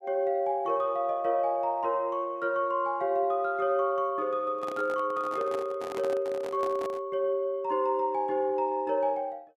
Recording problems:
handling noise; from 4.5 to 7 s; peak -7 dB vs average level

